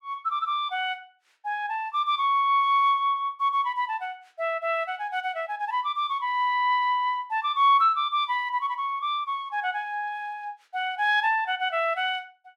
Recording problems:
none

